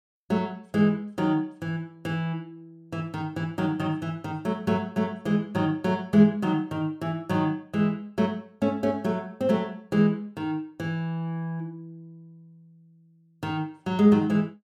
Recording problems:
none

